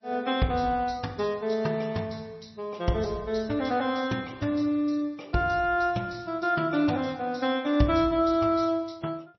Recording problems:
lossy codec; MP3, log-spectral distance 3 dB, nothing above 5.8 kHz

